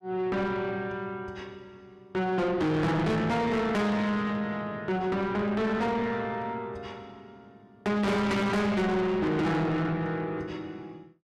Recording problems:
distorted audio; soft clipping, signal-to-distortion ratio 7 dB

